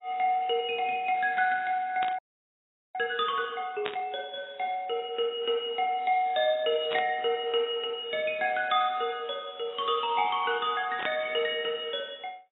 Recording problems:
codec artefacts; AAC, log-spectral distance 3 dB, nothing above 3.5 kHz
static burst; 4 times, first at 2 s; peak 0 dB vs average level
audio freezing; at 2 s for 1 s

